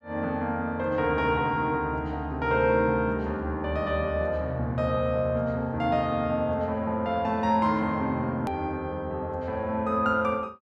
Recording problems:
edit click; at 8.5 s

